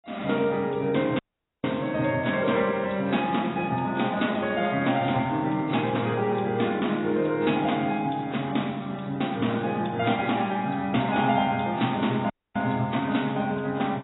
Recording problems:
lossy compression; AAC, log-spectral distance 4 dB, nothing above 3.8 kHz
audio cutting out; at 1 s and at 12 s

